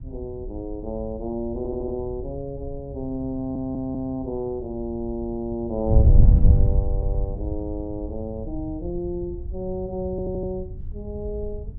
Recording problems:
wind noise; below 96 Hz, SNR -5 dB
audio stuttering; 4 times, first at 1.5 s

